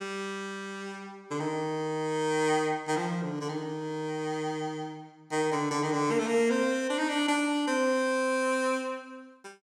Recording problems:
none

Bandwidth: 17 kHz